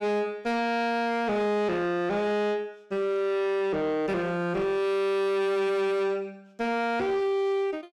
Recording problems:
distorted audio; soft clipping, signal-to-distortion ratio 6 dB

